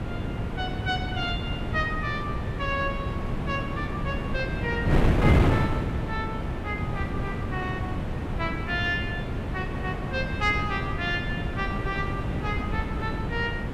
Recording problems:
wind on the microphone; below 350 Hz, SNR -2 dB

